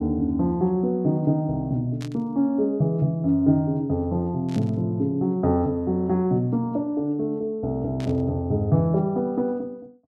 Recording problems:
burst of static; at 2 s, at 4.5 s and at 8 s; peak -13 dB vs average level

